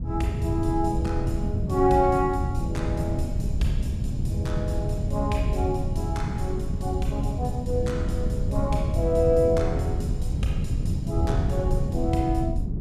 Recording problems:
wind noise; below 140 Hz, SNR 0 dB

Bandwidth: 14.5 kHz